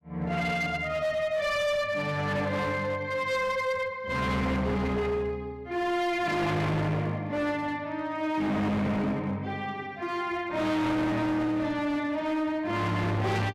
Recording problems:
distortion; hard clipping, uneven, signal-to-distortion ratio 7 dB

